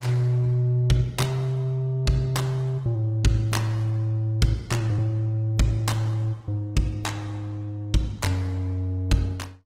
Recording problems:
codec artefacts; Opus, log-spectral distance 2 dB

